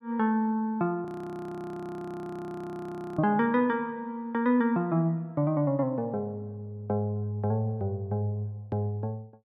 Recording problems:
audio freezing; at 1 s for 2 s

